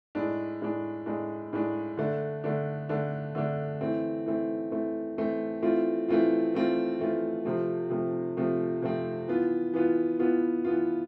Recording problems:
none

